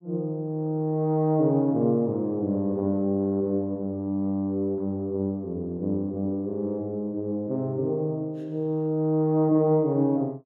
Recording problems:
none

